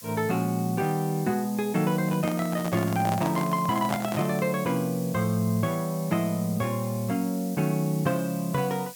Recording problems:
hiss; slope +5 dB per octave, SNR 15 dB
handling noise; from 2 to 4.5 s; peak +2 dB vs average level

